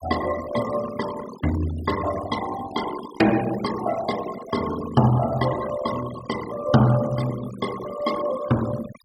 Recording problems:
denoising artefacts; signal-to-artefact ratio 13 dB

